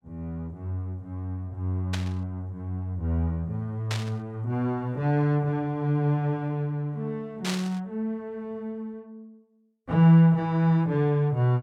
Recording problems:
static burst; at 2 s, at 4 s and at 7.5 s; peak -1 dB vs average level

